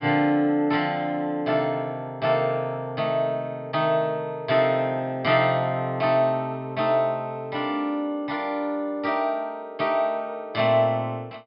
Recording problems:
low-pass filter; nothing above 5.5 kHz

